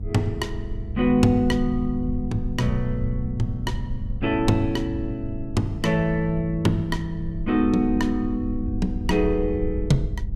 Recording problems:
electrical hum; 50 Hz, harmonics up to 500 Hz, SNR 14 dB
low-frequency rumble; below 72 Hz, SNR 9 dB

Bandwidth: 15 kHz